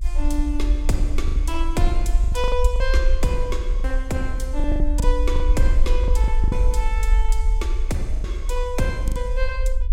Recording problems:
low-frequency rumble; below 52 Hz, SNR -4 dB
lost packets; 9% of the sound replaced, filled with the last packet

